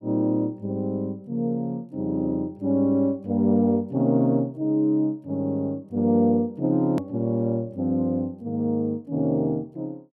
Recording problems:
click at an edit; at 7 s

